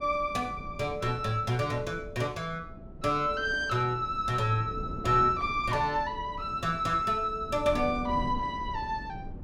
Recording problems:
wind on the microphone; below 220 Hz, SNR 14 dB

